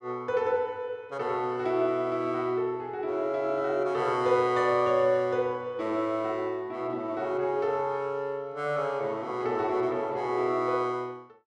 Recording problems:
none

